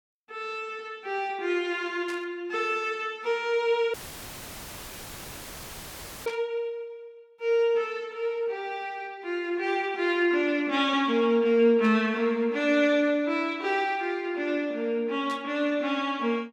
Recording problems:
burst of static; 4 times, first at 2 s; peak -10 dB vs average level
dropout; at 4 s for 2.5 s; filled with static

